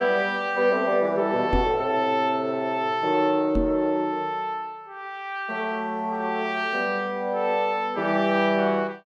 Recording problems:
knock on the microphone; at 1.5 s and at 3.5 s; peak +1 dB vs average level

